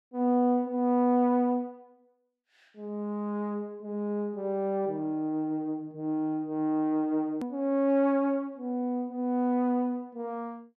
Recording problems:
hard cut with a click; at 7.5 s

